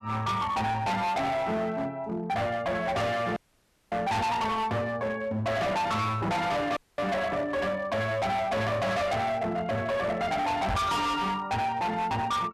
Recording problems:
distortion; hard clipping, uneven, signal-to-distortion ratio 6 dB
audio cutting out; at 3.5 s for 0.5 s and at 7 s
microphone bump; at 11 s; peak +2 dB vs average level

